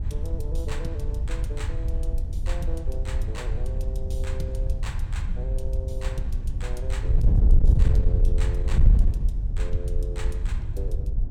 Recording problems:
distorted audio; soft clipping, signal-to-distortion ratio 11 dB
wind noise; below 68 Hz, SNR -11 dB

